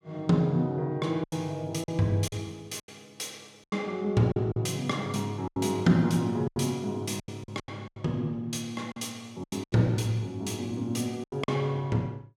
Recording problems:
packet loss; 9% of the sound replaced, filled with silence

